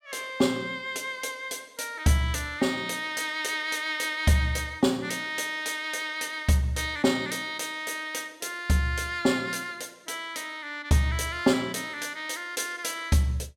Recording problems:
none

